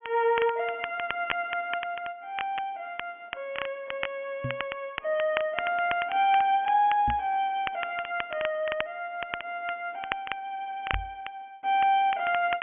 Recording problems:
low-pass filter; nothing above 3.2 kHz
crackling; vinyl, SNR 10 dB
knock on the microphone; at 4.5 s, at 7 s and at 11 s; peak -1 dB vs average level

